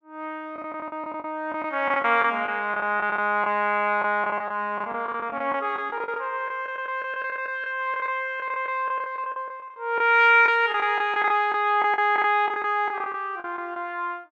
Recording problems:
lost packets; 14% of the sound replaced, filled with the last packet

